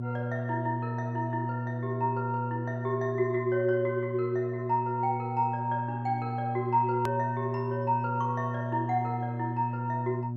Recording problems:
electrical hum; 60 Hz, harmonics up to 600 Hz, SNR 4 dB
click at an edit; at 7 s

